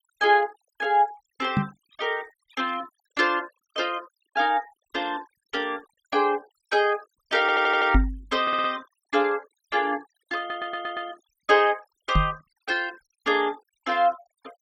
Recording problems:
noise reduction artefacts; signal-to-artefact ratio 25 dB
microphone thump; at 1.5 s, at 8 s and at 12 s; peak +8 dB vs average level
audio stuttering; at 7.5 s, at 8.5 s and at 10 s

